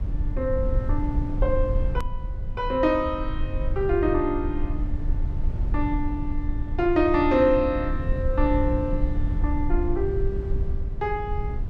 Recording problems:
low-frequency rumble; below 74 Hz, SNR 3 dB
edit click; at 2 s

